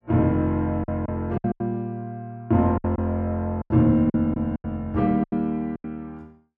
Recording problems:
packet loss; 11% of the sound replaced, filled with silence

